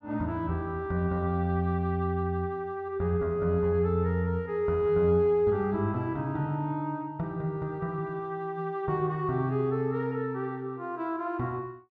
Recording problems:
none

